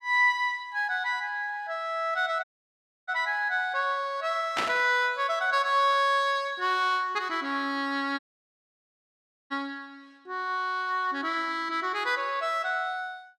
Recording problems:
dropout; at 2.5 s for 0.5 s and at 8 s for 1.5 s
static burst; at 4.5 s; peak +2 dB vs average level

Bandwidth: 14 kHz